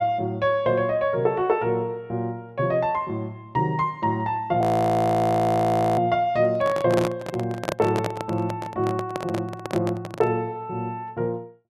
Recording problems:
frozen audio; at 4.5 s for 1.5 s
microphone handling noise; from 6.5 to 10 s; peak +2 dB vs average level

